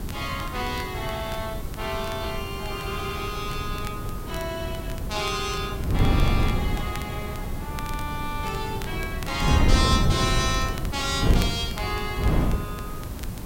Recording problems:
background hiss; SNR 14 dB
wind on the microphone; below 190 Hz, SNR -1 dB
crackle; vinyl, SNR 16 dB

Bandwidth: 16 kHz